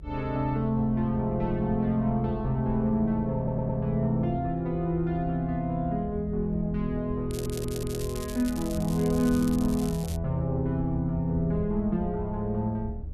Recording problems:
rumble; below 78 Hz, SNR 12 dB
audio stuttering; at 3.5 s and at 7.5 s
crackle; from 7.5 to 10 s; loose cable, SNR 15 dB

